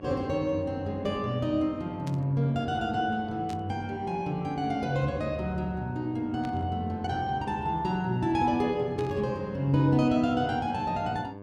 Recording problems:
electrical hum; 50 Hz, harmonics up to 1.2 kHz, SNR 17 dB
static burst; 4 times, first at 2 s; peak -12 dB vs average level

